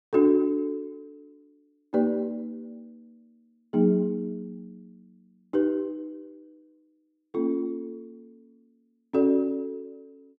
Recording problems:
none

